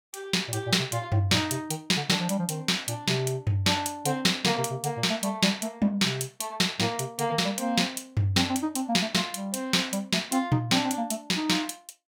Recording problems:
none

